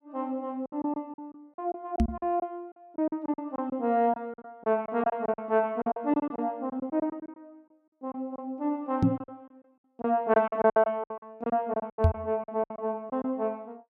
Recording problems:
packet loss; 14% of the sound replaced, filled with silence
microphone thump; at 2 s, at 9 s and at 12 s; peak +10 dB vs average level

